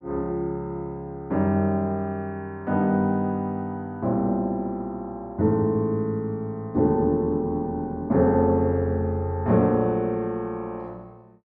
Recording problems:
none

